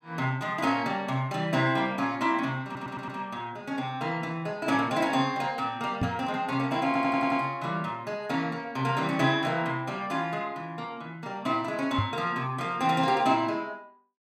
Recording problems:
stutter; at 2.5 s and at 7 s
microphone thump; at 6 s and at 12 s; peak +3 dB vs average level

